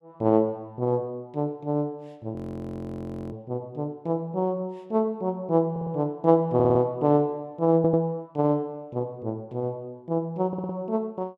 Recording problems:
audio freezing; at 2.5 s for 1 s
stutter; 4 times, first at 5.5 s

